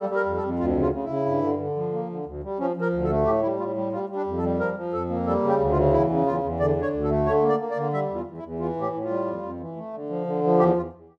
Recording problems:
none

